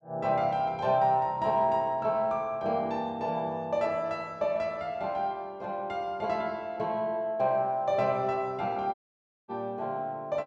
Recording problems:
audio cutting out; at 9 s for 0.5 s

